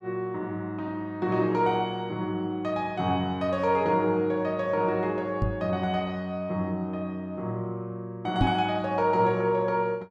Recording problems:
knock on the microphone; at 5.5 s and at 8.5 s; peak +6 dB vs average level

